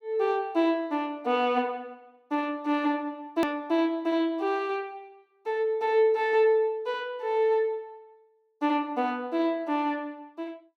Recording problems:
click at an edit; at 3.5 s

